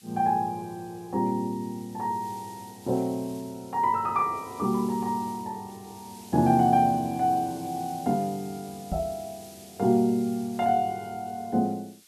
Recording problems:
background hiss; SNR 22 dB
knock on the microphone; at 9 s; peak -1 dB vs average level

